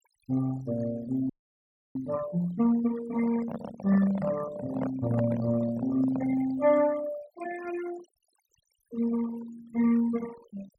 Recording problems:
noise reduction artefacts; signal-to-artefact ratio 17 dB
audio freezing; at 1.5 s for 0.5 s
handling noise; from 3 to 6.5 s; peak -2 dB vs average level

